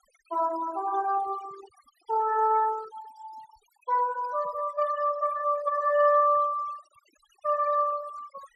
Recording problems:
denoising artefacts; signal-to-artefact ratio 20 dB

